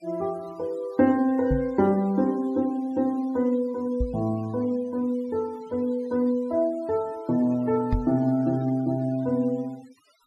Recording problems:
noise reduction artefacts; signal-to-artefact ratio 25 dB
microphone bump; at 1.5 s, at 4 s and at 8 s; peak +3 dB vs average level

